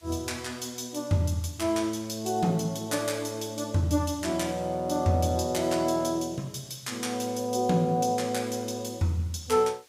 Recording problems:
background hiss; slope +1 dB per octave, SNR 28 dB

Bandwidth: 15.5 kHz